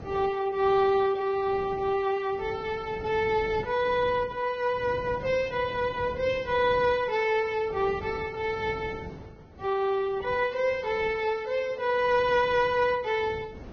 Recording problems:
codec artefacts; Vorbis, log-spectral distance 2 dB, nothing above 6.3 kHz
wind on the microphone; below 440 Hz, SNR 18 dB

